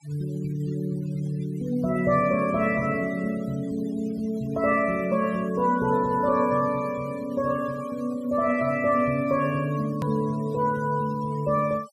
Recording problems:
noise reduction artefacts; signal-to-artefact ratio 22 dB
click at an edit; at 10 s

